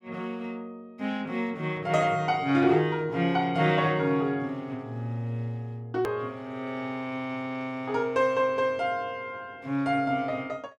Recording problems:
edit click; at 6 s

